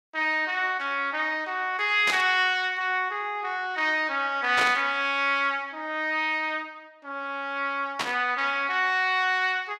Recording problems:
static burst; at 2 s, at 4.5 s and at 8 s; peak +1 dB vs average level

